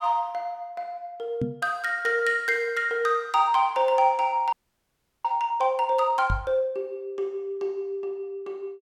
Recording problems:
knock on the microphone; at 1.5 s and at 6.5 s; peak +1 dB vs average level
audio freezing; at 4.5 s for 0.5 s

